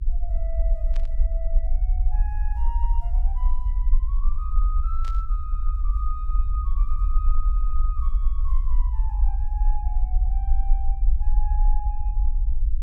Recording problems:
mains hum; 50 Hz, harmonics up to 350 Hz, SNR 12 dB
rumble; below 46 Hz, SNR -15 dB
static burst; at 1 s and at 5 s; peak 0 dB vs average level

